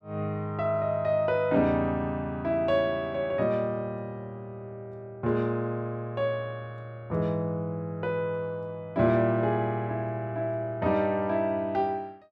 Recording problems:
none

